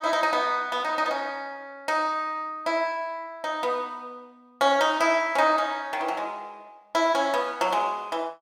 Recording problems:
none

